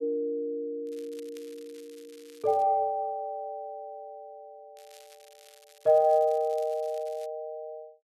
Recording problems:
crackle; from 1 to 2.5 s and from 5 to 7.5 s; loose cable, SNR 26 dB

